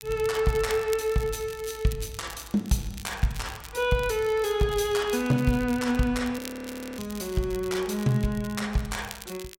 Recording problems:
crackling; vinyl, SNR 17 dB
audio freezing; at 6.5 s for 0.5 s

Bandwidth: 16 kHz